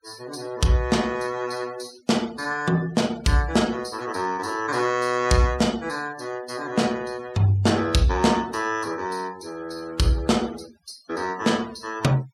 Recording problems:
denoising artefacts; signal-to-artefact ratio 21 dB

